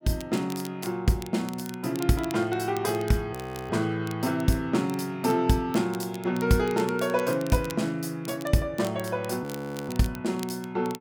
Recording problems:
crackling; vinyl, SNR 18 dB
audio freezing; at 3.5 s and at 9.5 s

